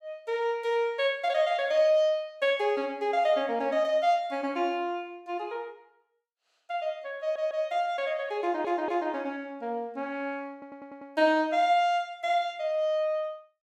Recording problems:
stutter; at 7 s, at 8.5 s and at 11 s

